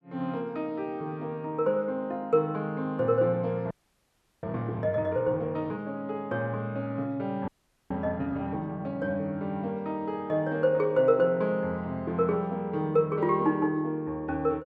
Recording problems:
audio freezing; at 3.5 s for 0.5 s and at 7.5 s

